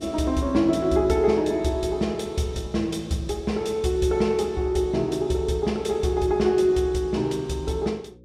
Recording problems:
hum; 60 Hz, harmonics up to 540 Hz, SNR 26 dB

